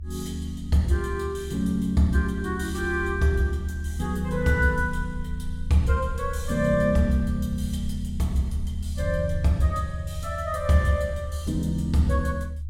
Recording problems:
rumble; below 76 Hz, strongest tone 76 Hz, SNR 8 dB

